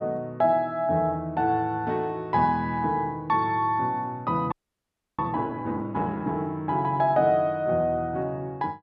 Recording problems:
frozen audio; at 4.5 s for 0.5 s

